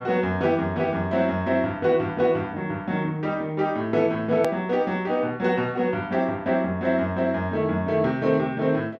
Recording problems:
click at an edit; at 4.5 s

